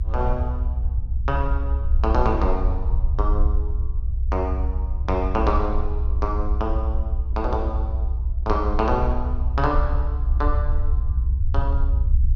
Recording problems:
rumble; below 64 Hz, SNR -3 dB

